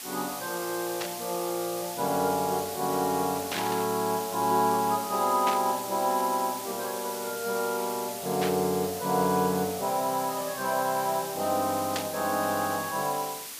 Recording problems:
hiss; SNR 8 dB
burst of static; 5 times, first at 1 s; peak +1 dB vs average level

